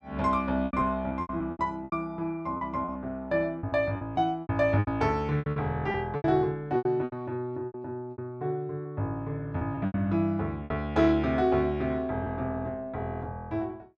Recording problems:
lost packets; 11% of the sound replaced, filled with repeated pitch periods

